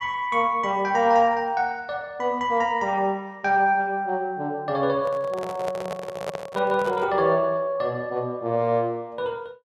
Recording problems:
handling noise; from 5 to 7 s; peak -3 dB vs average level

